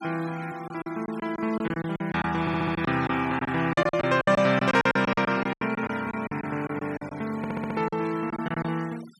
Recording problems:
denoising artefacts; signal-to-artefact ratio 19 dB
lost packets; 15% of the sound replaced, filled with silence
audio stuttering; at 2.5 s and at 7.5 s

